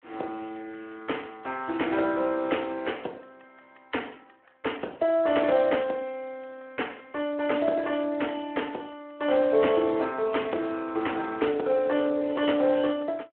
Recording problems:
phone line; 300 Hz to 3.2 kHz, Speex

